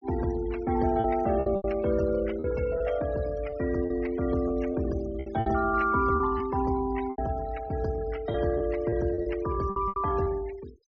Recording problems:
treble missing; nothing above 6.5 kHz
denoising artefacts; signal-to-artefact ratio 19 dB
lost packets; 9% of the sound replaced, filled with repeated pitch periods

